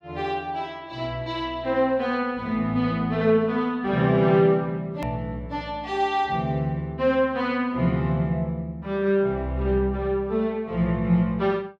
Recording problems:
hard cut with a click; at 5 s

